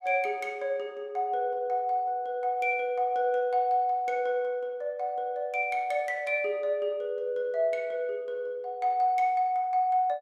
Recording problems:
none

